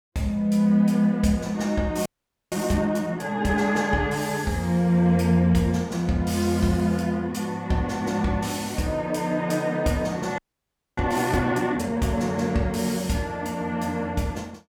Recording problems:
audio freezing; at 2 s and at 10 s for 0.5 s

